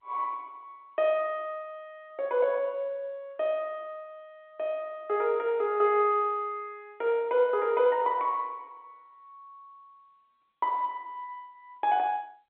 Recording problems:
telephone audio; 280 Hz to 3.8 kHz, G.711

